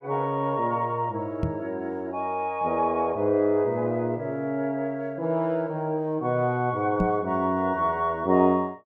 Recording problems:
knock on the microphone; at 1.5 s and at 7 s; peak +3 dB vs average level

